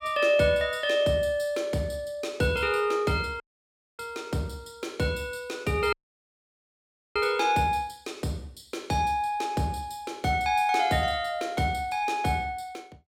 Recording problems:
dropout; at 3.5 s for 0.5 s and at 6 s for 1 s

